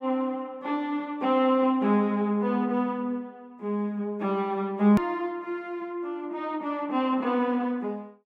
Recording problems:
click at an edit; at 5 s

